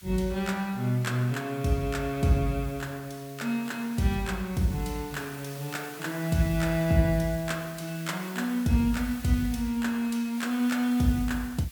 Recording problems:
background hiss; SNR 17 dB

